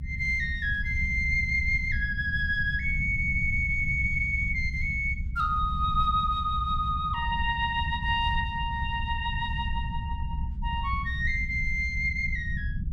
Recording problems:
rumble; below 100 Hz, SNR 6 dB

